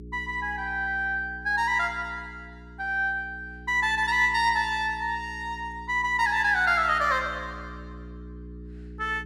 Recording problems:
mains hum; 60 Hz, harmonics up to 420 Hz, SNR 18 dB

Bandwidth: 14.5 kHz